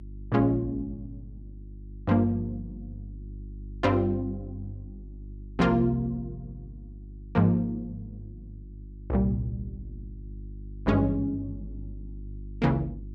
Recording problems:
electrical hum; 50 Hz, harmonics up to 350 Hz, SNR 15 dB

